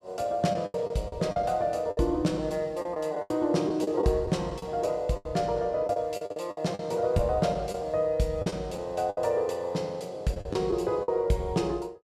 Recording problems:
packet loss; 10% of the sound replaced, filled with the last packet

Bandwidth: 14.5 kHz